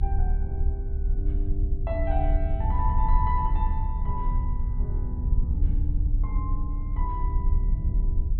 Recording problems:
treble cut off; nothing above 4.2 kHz
low-frequency rumble; below 70 Hz, strongest tone 32 Hz, SNR -8 dB

